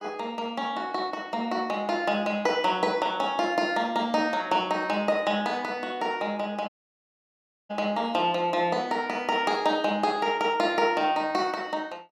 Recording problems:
audio cutting out; at 6.5 s for 1 s

